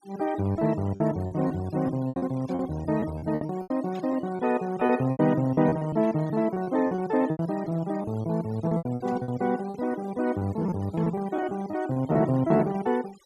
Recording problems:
noise reduction artefacts; signal-to-artefact ratio 21 dB
packet loss; 14% of the sound replaced, filled with repeated pitch periods
burst of static; 5 times, first at 2.5 s; peak -19 dB vs average level

